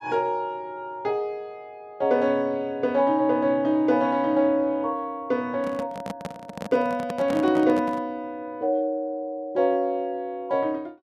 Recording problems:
handling noise; from 5.5 to 8 s; peak -3 dB vs average level

